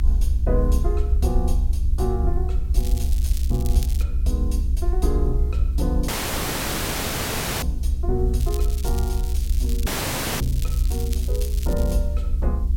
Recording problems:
electrical hum; 60 Hz, harmonics up to 360 Hz, SNR 9 dB
background hiss; slope +5 dB per octave, SNR 26 dB
rumble; below 66 Hz, SNR -6 dB
crackling; from 3 to 4 s and from 8.5 to 12 s; loose cable, SNR 9 dB
dropout; at 6 s for 1.5 s and at 10 s for 0.5 s

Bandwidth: 16.5 kHz